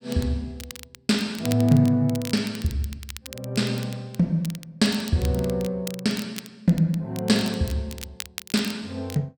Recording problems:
crackling; vinyl, SNR 16 dB

